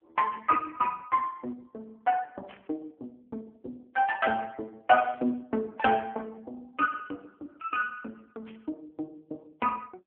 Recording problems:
phone line; 240 Hz to 2.5 kHz, AMR-NB
static burst; at 2.5 s, at 5 s and at 8.5 s; peak -17 dB vs average level

